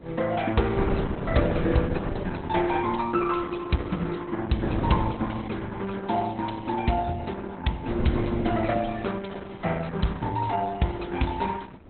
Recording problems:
codec artefacts; Opus, log-spectral distance 4 dB, nothing above 4 kHz
wind noise; below 380 Hz, SNR 4 dB

